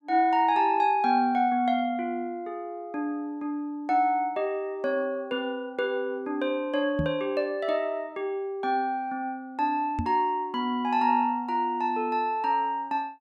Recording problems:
knock on the microphone; at 7 s and at 10 s; peak +1 dB vs average level

